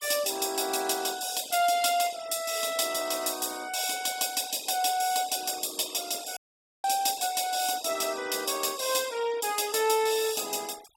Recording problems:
noise reduction artefacts; signal-to-artefact ratio 18 dB
dropout; at 6.5 s

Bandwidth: 17 kHz